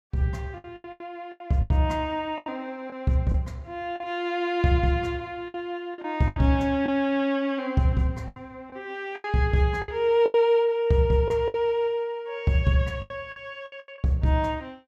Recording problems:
lost packets; 10% of the sound replaced, filled with the last packet

